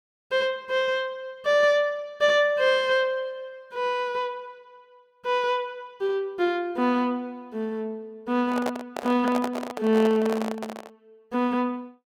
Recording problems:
handling noise; from 8.5 to 11 s; peak -1 dB vs average level

